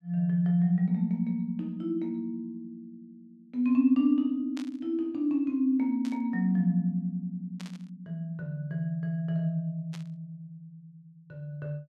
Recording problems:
static burst; 4 times, first at 4.5 s; peak -11 dB vs average level

